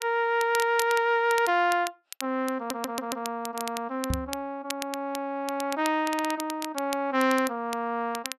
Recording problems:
crackling; vinyl, SNR 12 dB
audio stuttering; at 2.5 s and at 6 s
knock on the microphone; at 4 s; peak +1 dB vs average level

